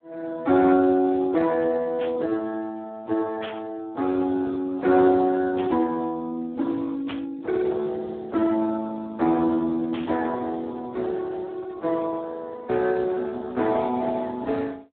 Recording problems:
phone line; 260 Hz to 2.2 kHz, Speex
static burst; 5 times, first at 2 s; peak -6 dB vs average level

